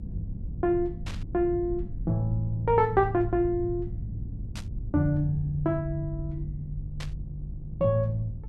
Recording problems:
electrical hum; 50 Hz, harmonics up to 500 Hz, SNR 18 dB
rumble; below 110 Hz, SNR 11 dB
static burst; at 1 s, at 4.5 s and at 7 s; peak -9 dB vs average level

